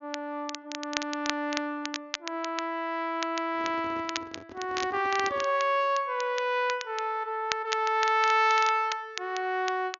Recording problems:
treble missing; nothing above 6.7 kHz
crackling; vinyl, SNR 10 dB
microphone handling noise; from 3.5 to 5.5 s; peak -10 dB vs average level

